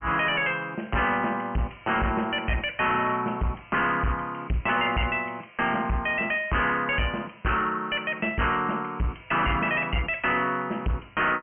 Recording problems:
treble missing; nothing above 3.1 kHz
distorted audio; hard clipping, signal-to-distortion ratio 7 dB

